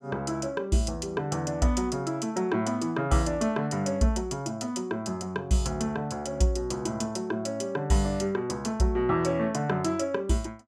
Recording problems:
none

